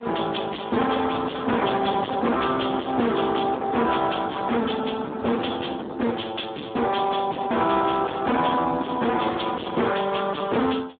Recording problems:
telephone audio; 220 Hz to 3.6 kHz, Speex
distortion; hard clipping, signal-to-distortion ratio 8 dB

